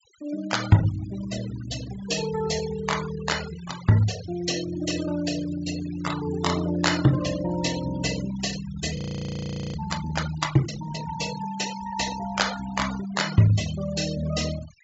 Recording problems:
treble missing; nothing above 8 kHz
denoising artefacts; signal-to-artefact ratio 12 dB
audio freezing; at 9 s for 1 s

